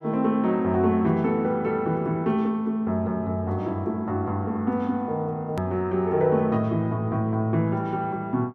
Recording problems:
edit click; at 5.5 s

